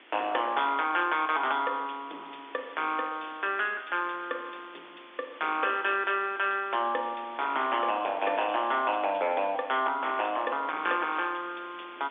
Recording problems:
telephone audio; 260 Hz to 3.6 kHz, G.711
distortion; hard clipping, uneven, signal-to-distortion ratio 13 dB
background hiss; SNR 20 dB

